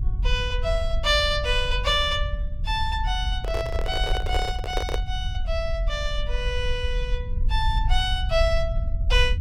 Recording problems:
low-frequency rumble; below 62 Hz, SNR 2 dB
microphone handling noise; from 3.5 to 5 s; peak +1 dB vs average level

